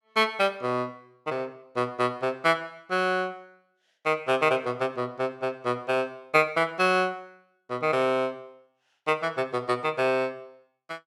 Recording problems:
none

